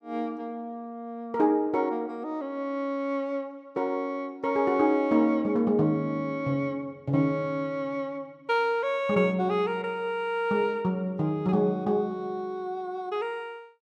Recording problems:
none

